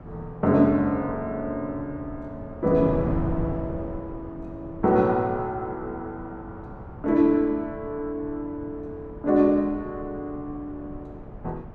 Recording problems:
wind on the microphone; below 300 Hz, SNR 13 dB

